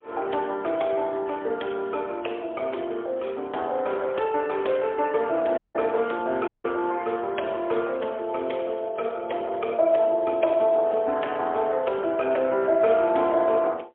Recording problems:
telephone audio; 300 Hz to 3.5 kHz, AMR-NB, then MP3
audio cutting out; at 5.5 s and at 6.5 s

